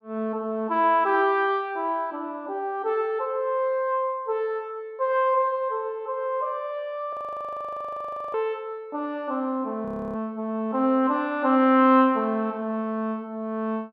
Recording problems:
frozen audio; at 7 s for 1 s and at 10 s

